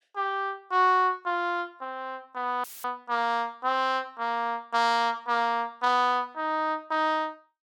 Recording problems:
dropout; at 2.5 s; filled with static

